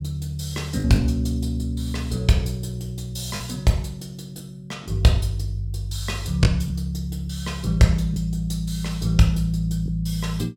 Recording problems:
lost packets; 2% of the sound replaced, filled with the last packet

